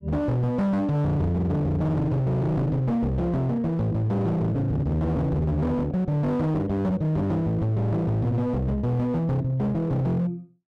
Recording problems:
distortion; hard clipping, signal-to-distortion ratio 8 dB

